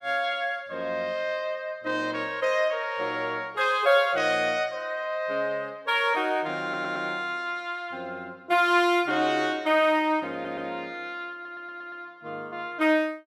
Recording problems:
audio stuttering; at 6.5 s, at 10 s and at 11 s

